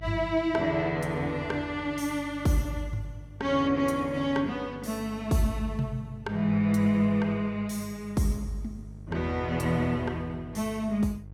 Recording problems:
hum; 50 Hz, harmonics up to 500 Hz, SNR 18 dB

